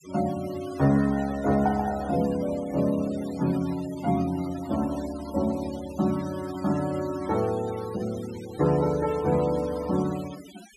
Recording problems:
noise reduction artefacts; signal-to-artefact ratio 17 dB

